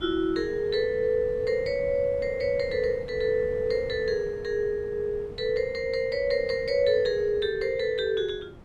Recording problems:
wind noise; below 330 Hz, SNR 18 dB

